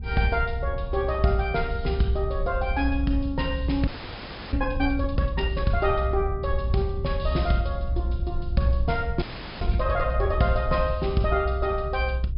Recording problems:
treble cut off; nothing above 5.5 kHz
rumble; below 72 Hz, SNR 3 dB
audio freezing; at 4 s for 0.5 s and at 9 s

